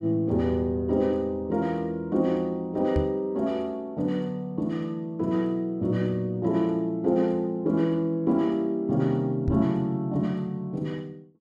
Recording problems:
microphone thump; at 3 s and at 9.5 s; peak +4 dB vs average level

